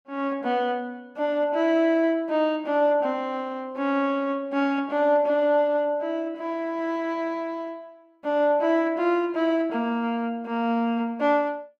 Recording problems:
none

